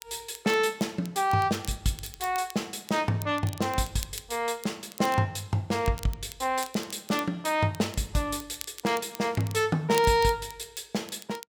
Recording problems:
crackling; vinyl, SNR 16 dB

